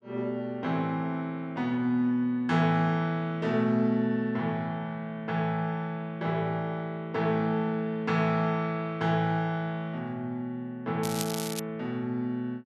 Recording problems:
crackling; at 11 s; loose cable, SNR 8 dB

